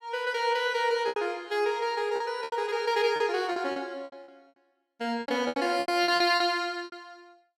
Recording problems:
packet loss; 14% of the sound replaced, filled with repeated pitch periods

